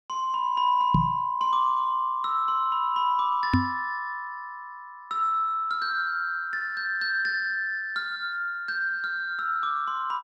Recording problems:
microphone bump; at 1 s and at 3.5 s; peak +7 dB vs average level

